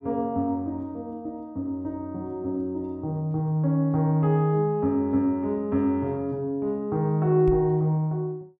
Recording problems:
knock on the microphone; at 7.5 s; peak -2 dB vs average level

